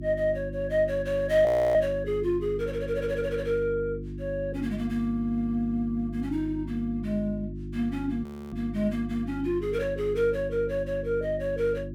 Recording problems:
hum; 50 Hz, harmonics up to 350 Hz, SNR 9 dB
audio freezing; at 1.5 s and at 8 s

